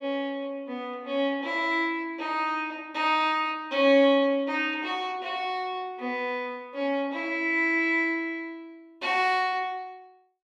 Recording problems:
none

